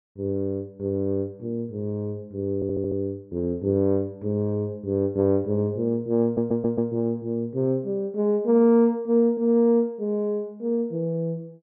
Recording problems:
stutter; at 2.5 s and at 6 s

